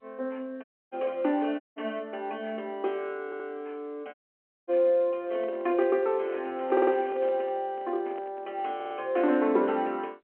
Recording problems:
phone line; 240 Hz to 3.2 kHz, G.711
dropout; at 0.5 s, at 1.5 s and at 4 s for 0.5 s
stutter; at 3.5 s, at 6.5 s and at 9 s
microphone handling noise; from 5 to 9 s; peak -10 dB vs average level

